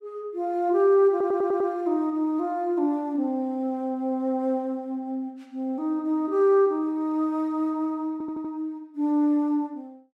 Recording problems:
audio stuttering; at 1 s and at 8 s

